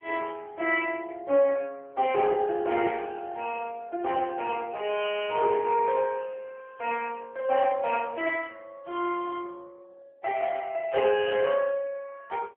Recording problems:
phone line; 280 Hz to 3.2 kHz, AMR-NB

